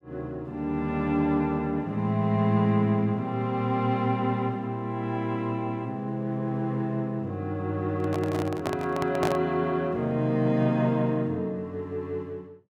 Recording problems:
handling noise; from 8 to 9.5 s; peak +2 dB vs average level

